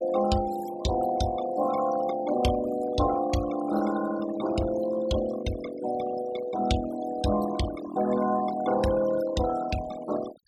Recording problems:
denoising artefacts; signal-to-artefact ratio 12 dB

